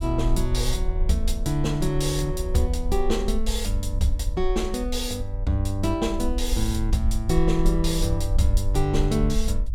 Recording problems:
rumble; below 50 Hz, SNR 3 dB

